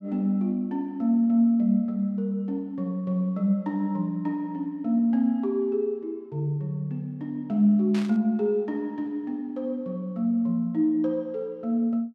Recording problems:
burst of static; at 8 s; peak -9 dB vs average level

